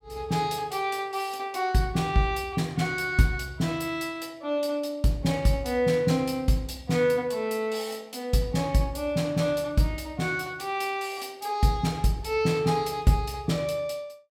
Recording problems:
none

